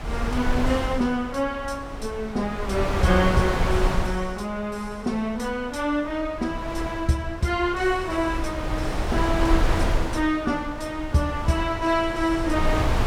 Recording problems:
wind on the microphone; below 430 Hz, SNR 3 dB

